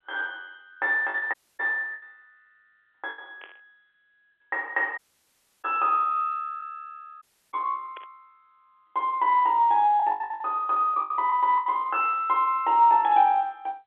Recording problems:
phone line; 300 Hz to 3.5 kHz, G.711
packet loss; 8% of the sound replaced, filled with the last packet
audio cutting out; at 1.5 s, at 5 s for 0.5 s and at 7 s
burst of static; at 3.5 s, at 8 s and at 13 s; peak -16 dB vs average level

